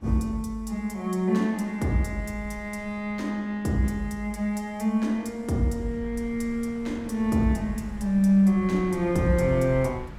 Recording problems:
wind noise; below 180 Hz, SNR 18 dB

